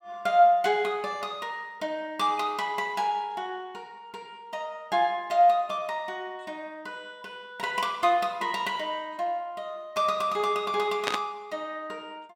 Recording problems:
static burst; at 11 s; peak +3 dB vs average level

